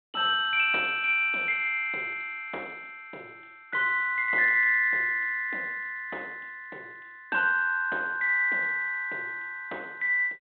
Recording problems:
telephone audio; 320 Hz to 3.8 kHz, G.726

